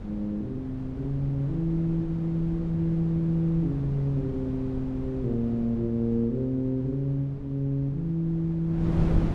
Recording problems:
wind on the microphone; below 220 Hz, SNR 9 dB

